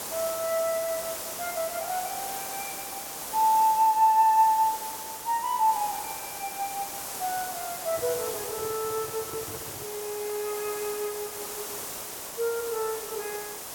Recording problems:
background hiss; SNR 7 dB
microphone handling noise; from 8 to 10 s; peak -10 dB vs average level

